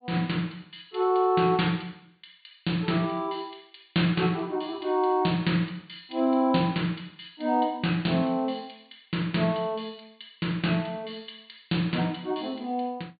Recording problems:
treble missing; nothing above 4.5 kHz

